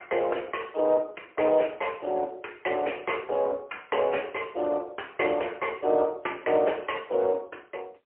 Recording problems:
telephone audio; 340 Hz to 3.1 kHz, AMR-NB, then MP3

